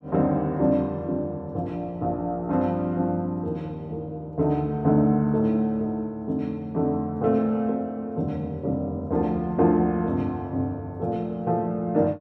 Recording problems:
none

